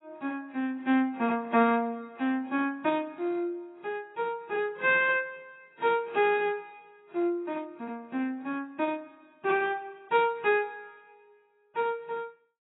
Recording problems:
codec artefacts; AAC, log-spectral distance 2 dB, nothing above 3.5 kHz

